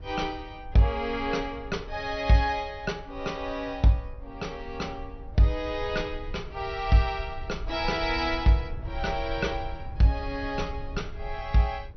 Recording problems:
lossy compression; MP2, log-spectral distance 2 dB, nothing above 6 kHz
rumble; below 72 Hz, SNR 13 dB

